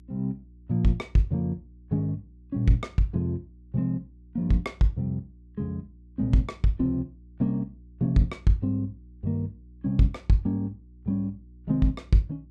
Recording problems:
hum; 60 Hz, harmonics up to 360 Hz, SNR 24 dB

